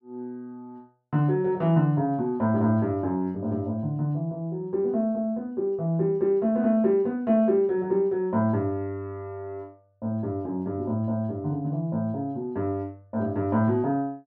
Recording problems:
none

